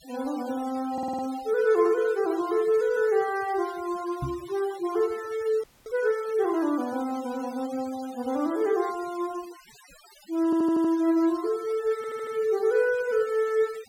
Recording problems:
noise reduction artefacts; signal-to-artefact ratio 21 dB
stutter; at 1 s, at 10 s and at 12 s
microphone bump; at 4 s; peak -2 dB vs average level
audio freezing; at 5.5 s

